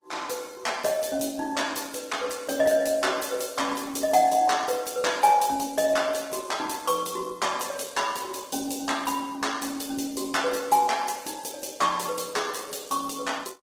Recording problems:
lossy compression; Opus, log-spectral distance 6 dB

